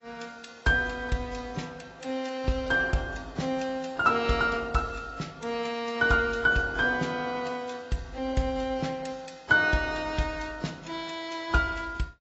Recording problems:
lossy codec; AAC, log-spectral distance 3 dB, nothing above 7.8 kHz

